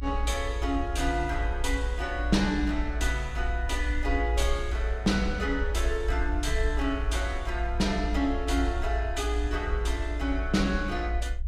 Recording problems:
low-frequency rumble; below 58 Hz, strongest tone 56 Hz, SNR 2 dB

